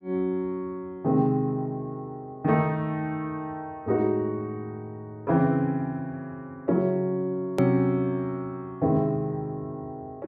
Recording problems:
edit click; at 7.5 s

